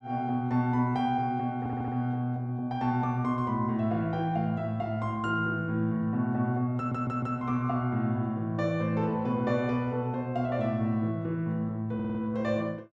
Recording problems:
stutter; at 1.5 s, at 7 s and at 12 s

